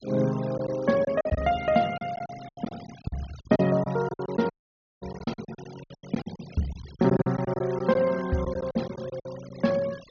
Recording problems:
treble missing; nothing above 6.6 kHz
noise reduction artefacts; signal-to-artefact ratio 19 dB
lost packets; 14% of the sound replaced, filled with silence
dropout; at 4.5 s for 0.5 s

